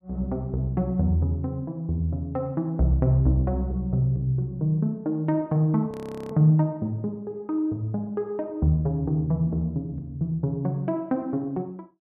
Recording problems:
audio freezing; at 6 s

